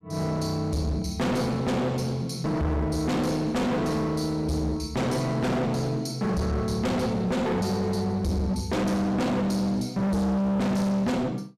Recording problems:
distortion; hard clipping, uneven, signal-to-distortion ratio 5 dB

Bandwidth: 15 kHz